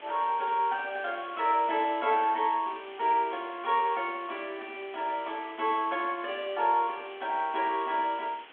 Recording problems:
phone line; 220 Hz to 3.5 kHz, G.726
hiss; SNR 20 dB

